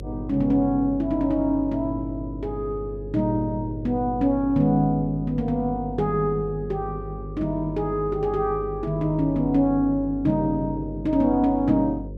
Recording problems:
hum; 50 Hz, harmonics up to 550 Hz, SNR 12 dB

